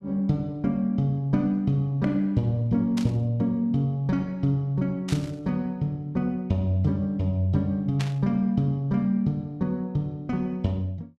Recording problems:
static burst; at 3 s, at 5 s and at 8 s; peak -4 dB vs average level

